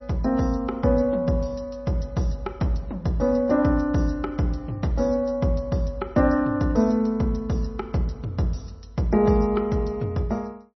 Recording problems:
lossy compression; MP3, log-spectral distance 2 dB, nothing above 5.8 kHz

